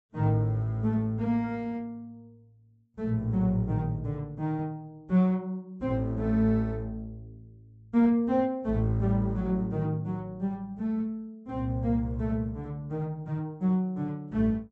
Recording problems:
treble cut off; nothing above 7.9 kHz

